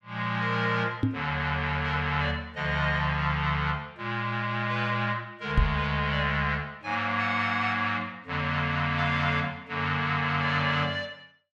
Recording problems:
microphone bump; at 1 s and at 5.5 s; peak +7 dB vs average level

